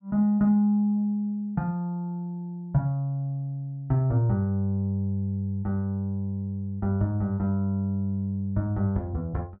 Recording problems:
treble cut off; nothing above 5.5 kHz

